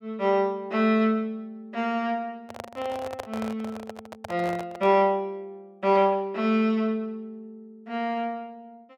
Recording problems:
handling noise; from 2.5 to 5 s; peak -5 dB vs average level

